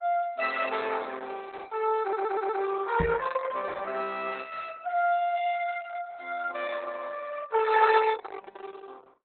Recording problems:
codec artefacts; Opus, log-spectral distance 4 dB, nothing above 4 kHz
audio stuttering; at 2 s
microphone bump; at 3 s; peak +3 dB vs average level

